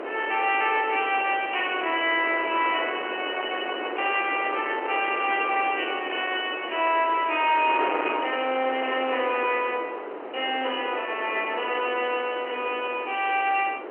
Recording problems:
phone line; 300 Hz to 3.1 kHz, G.711
distortion; soft clipping, signal-to-distortion ratio 12 dB
wind noise; below 1.3 kHz, SNR 9 dB

